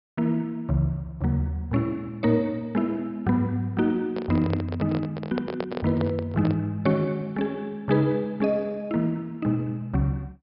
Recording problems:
treble cut off; nothing above 5.5 kHz
handling noise; from 4 to 6.5 s; peak -1 dB vs average level

